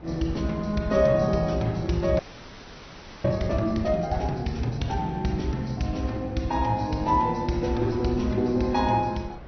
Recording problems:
treble cut off; nothing above 6 kHz
codec artefacts; AAC, log-spectral distance 3 dB
wind on the microphone; below 530 Hz, SNR 20 dB
frozen audio; at 2 s for 1 s

